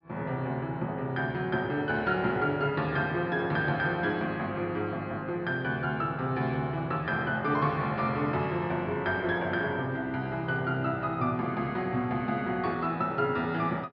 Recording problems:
treble missing; nothing above 5.5 kHz

